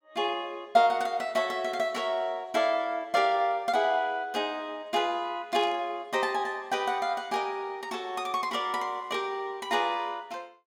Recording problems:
static burst; at 5.5 s; peak -11 dB vs average level

